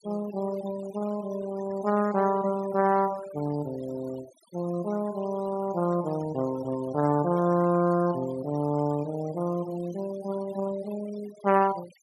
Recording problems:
denoising artefacts; signal-to-artefact ratio 19 dB

